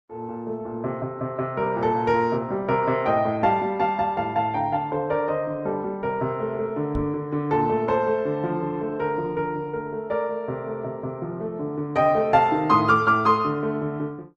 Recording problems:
lossy codec; Opus, log-spectral distance 2 dB, nothing above 10.7 kHz
microphone bump; at 7 s; peak -2 dB vs average level

